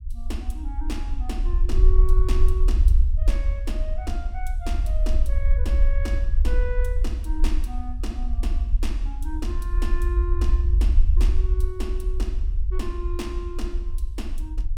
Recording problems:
rumble; below 54 Hz, SNR -11 dB

